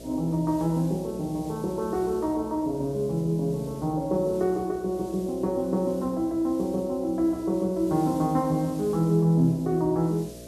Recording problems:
hum; 60 Hz, harmonics up to 660 Hz, SNR 18 dB
hiss; SNR 24 dB

